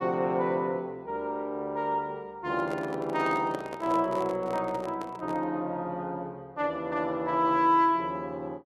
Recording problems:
microphone handling noise; from 2.5 to 5.5 s; peak -3 dB vs average level

